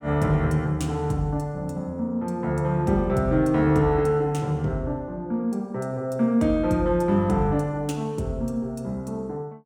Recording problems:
none

